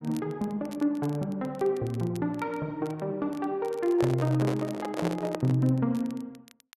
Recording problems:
crackle; vinyl, SNR 25 dB
microphone handling noise; from 4 to 5.5 s; peak +2 dB vs average level

